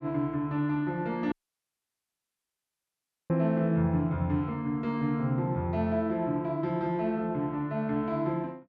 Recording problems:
audio cutting out; at 1.5 s for 2 s

